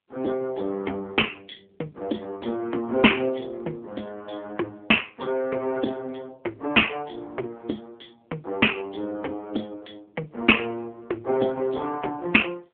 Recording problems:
phone line; 240 Hz to 3.4 kHz, AMR-NB

